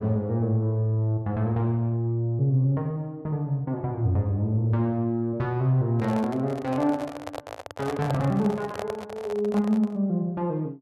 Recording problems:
microphone handling noise; from 6 to 10 s; peak -2 dB vs average level

